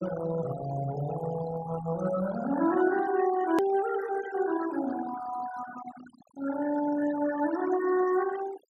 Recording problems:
denoising artefacts; signal-to-artefact ratio 12 dB
edit click; at 3.5 s

